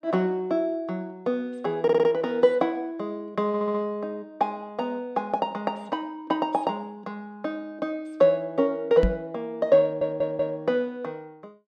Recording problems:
audio stuttering; at 2 s, at 3.5 s and at 10 s
microphone bump; at 9 s; peak +5 dB vs average level

